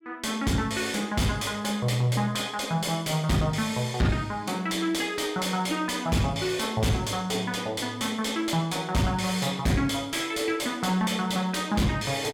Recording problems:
distortion; soft clipping, signal-to-distortion ratio 6 dB

